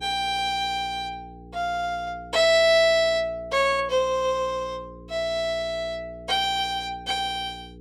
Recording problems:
hum; 60 Hz, harmonics up to 480 Hz, SNR 21 dB

